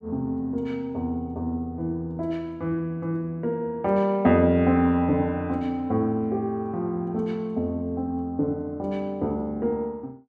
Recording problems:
none

